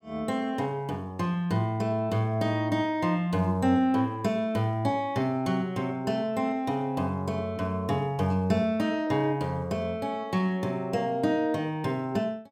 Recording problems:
none

